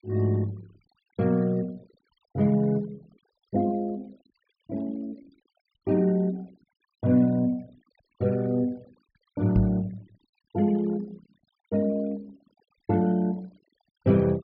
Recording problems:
treble missing; nothing above 5.5 kHz
denoising artefacts; signal-to-artefact ratio 27 dB
knock on the microphone; at 9.5 s; peak +5 dB vs average level

